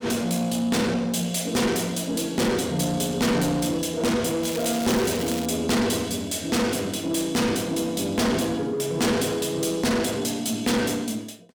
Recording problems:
distorted audio; soft clipping, signal-to-distortion ratio 7 dB
crackling; from 4.5 to 5.5 s; loose cable, SNR 10 dB

